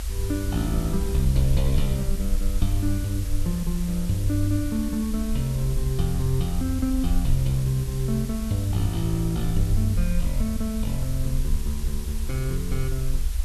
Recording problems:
background hiss; slope 0 dB per octave, SNR 13 dB
low-frequency rumble; below 60 Hz, SNR 4 dB

